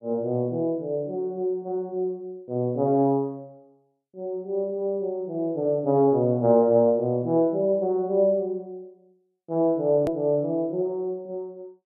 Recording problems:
edit click; at 10 s

